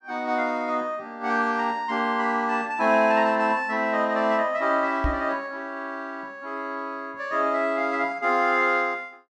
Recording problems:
knock on the microphone; at 5 s; peak +1 dB vs average level

